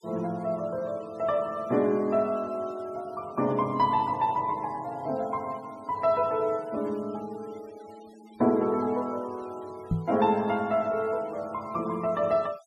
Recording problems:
noise reduction artefacts; signal-to-artefact ratio 24 dB
knock on the microphone; at 10 s; peak +5 dB vs average level

